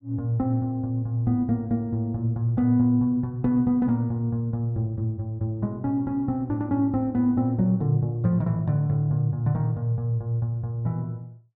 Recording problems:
none

